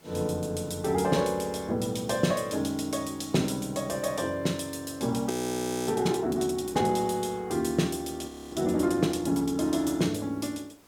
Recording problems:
background hiss; slope -4 dB per octave, SNR 28 dB
audio freezing; at 5.5 s for 0.5 s and at 8.5 s

